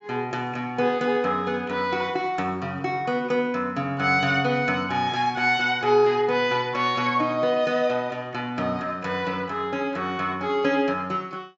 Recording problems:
treble cut off; nothing above 8 kHz

